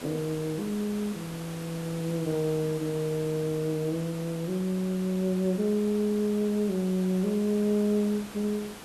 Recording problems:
background hiss; slope -4 dB per octave, SNR 14 dB

